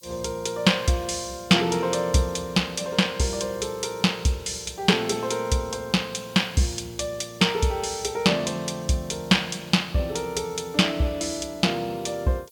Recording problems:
hiss; SNR 27 dB

